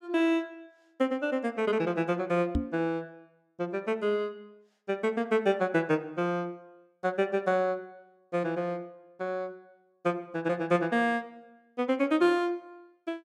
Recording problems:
microphone thump; at 2.5 s; peak +5 dB vs average level

